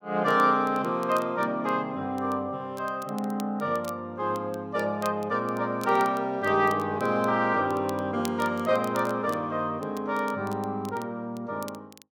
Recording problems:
crackle; vinyl, SNR 22 dB

